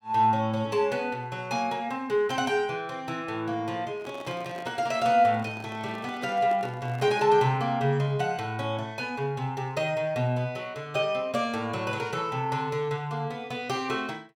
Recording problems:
handling noise; from 4 to 7.5 s; peak -9 dB vs average level

